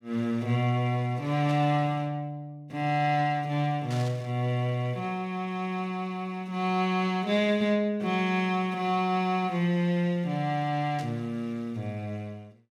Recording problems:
burst of static; at 1.5 s, at 4 s and at 11 s; peak -10 dB vs average level

